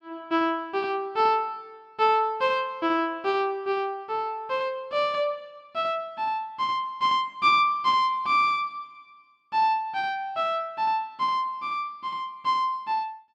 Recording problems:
none

